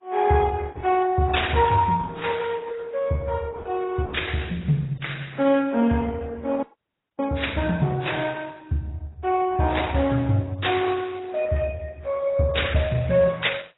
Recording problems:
lossy compression; Opus, then AAC, log-spectral distance 4 dB, nothing above 3.8 kHz
audio freezing; at 6.5 s for 0.5 s

